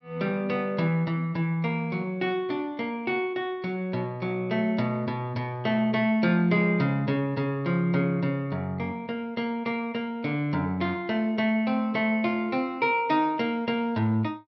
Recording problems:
low-pass filter; nothing above 5.5 kHz

